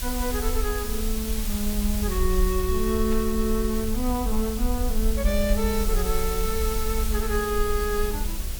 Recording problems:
hum; 60 Hz, harmonics up to 720 Hz, SNR 17 dB
background hiss; slope +1 dB per octave, SNR 6 dB
low-frequency rumble; below 56 Hz, SNR 2 dB
static burst; at 3 s and at 5.5 s; peak -11 dB vs average level

